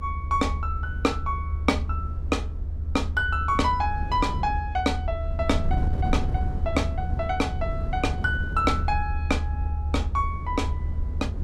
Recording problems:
rumble; below 78 Hz, strongest tone 76 Hz, SNR 3 dB
wind noise; below 140 Hz, SNR 7 dB

